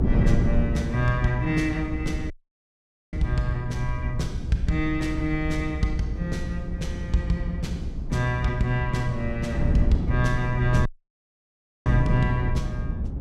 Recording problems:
low-frequency rumble; below 68 Hz, SNR 8 dB
wind on the microphone; below 180 Hz, SNR 3 dB
dropout; at 2.5 s for 1 s and at 11 s for 1 s

